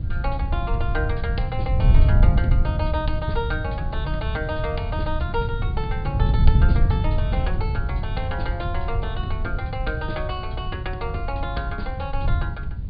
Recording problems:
treble missing; nothing above 4.8 kHz
hiss; SNR 27 dB
wind noise; below 94 Hz, SNR -5 dB

